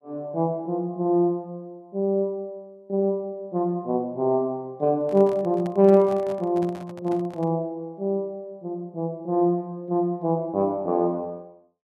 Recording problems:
microphone handling noise; from 5 to 7.5 s; peak -11 dB vs average level

